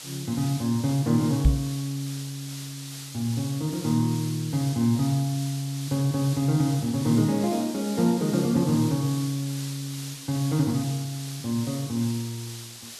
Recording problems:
background hiss; slope +2 dB per octave, SNR 12 dB
knock on the microphone; at 1.5 s; peak +9 dB vs average level

